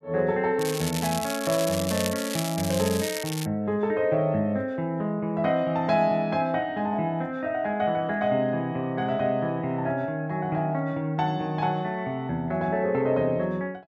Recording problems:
crackling; from 0.5 to 3.5 s; loose cable, SNR 7 dB

